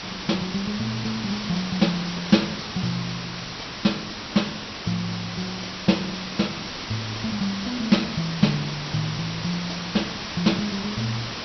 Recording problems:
treble cut off; nothing above 5.9 kHz
background hiss; slope -1 dB per octave, SNR 5 dB

